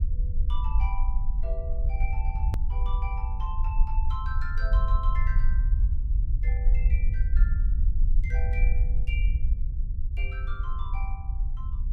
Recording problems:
rumble; below 54 Hz, SNR -12 dB
edit click; at 2.5 s

